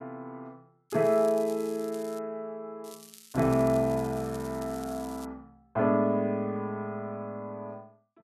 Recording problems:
crackle; from 1 to 2 s and from 3 to 5.5 s; loose cable, SNR 20 dB

